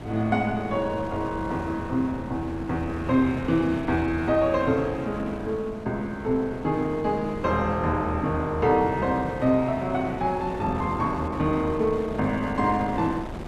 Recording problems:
wind noise; below 600 Hz, SNR 12 dB

